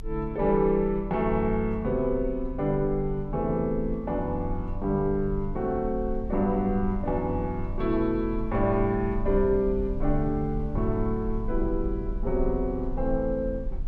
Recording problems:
low-frequency rumble; below 46 Hz, strongest tone 24 Hz, SNR 9 dB

